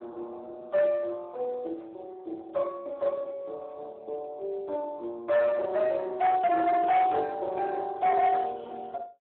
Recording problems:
telephone audio; 340 Hz to 3 kHz, Speex
distortion; hard clipping, signal-to-distortion ratio 11 dB

